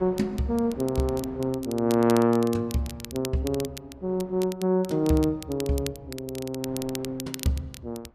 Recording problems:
wind on the microphone; below 730 Hz, SNR 24 dB
crackle; vinyl, SNR 15 dB

